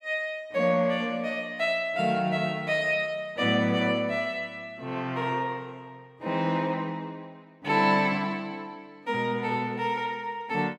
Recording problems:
none

